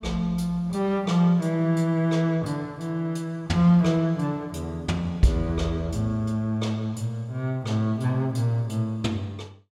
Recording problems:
none

